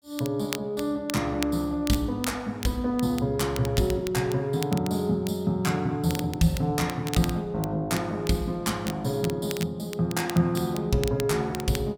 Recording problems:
crackle; vinyl, SNR 14 dB

